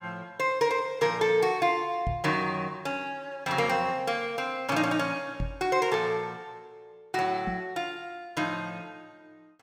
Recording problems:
microphone bump; at 2 s, at 5.5 s and at 7.5 s; peak -1 dB vs average level

